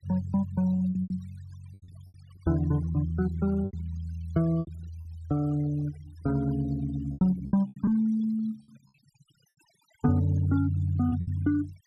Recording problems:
noise reduction artefacts; signal-to-artefact ratio 23 dB
packet loss; 9% of the sound replaced, filled with repeated pitch periods

